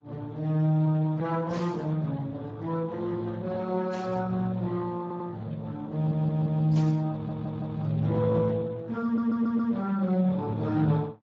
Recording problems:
lossy codec; AAC, then Speex, log-spectral distance 3 dB
static burst; at 1.5 s, at 4 s and at 7 s; peak -12 dB vs average level
stutter; 4 times, first at 5 s

